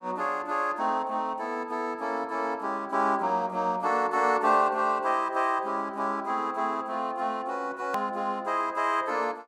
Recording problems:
click at an edit; at 8 s

